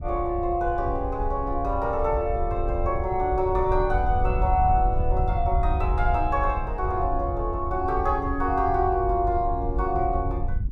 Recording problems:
wind on the microphone; below 76 Hz, SNR 5 dB

